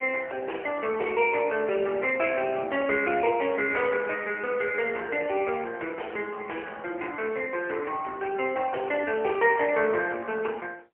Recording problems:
telephone audio; 320 Hz to 3 kHz, AMR-NB, then MP3

